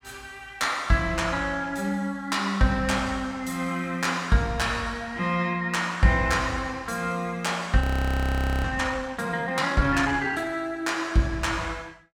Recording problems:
frozen audio; at 8 s for 1 s

